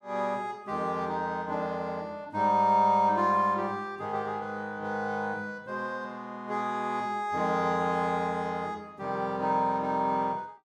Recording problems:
none

